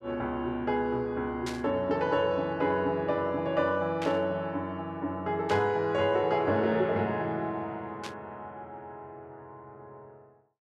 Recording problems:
burst of static; 4 times, first at 1.5 s; peak -5 dB vs average level

